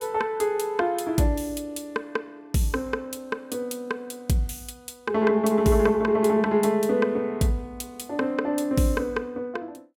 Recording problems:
none

